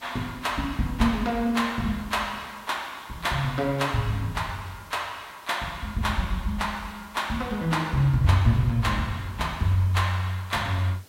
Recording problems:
background hiss; slope -3 dB per octave, SNR 25 dB

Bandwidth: 16 kHz